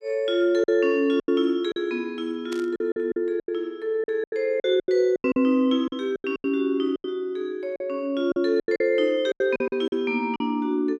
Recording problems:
lost packets; 13% of the sound replaced, filled with silence
burst of static; at 2.5 s; peak -10 dB vs average level

